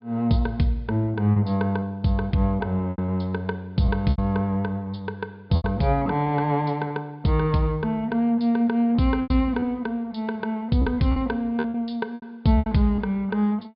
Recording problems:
treble missing; nothing above 5.1 kHz
lost packets; 7% of the sound replaced, filled with repeated pitch periods

